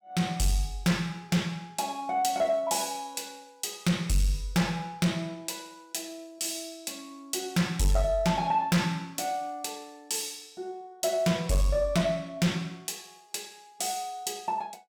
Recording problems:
distorted audio; soft clipping, signal-to-distortion ratio 11 dB

